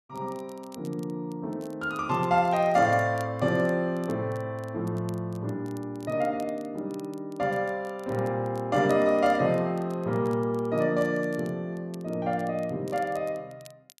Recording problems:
crackle; vinyl, SNR 27 dB

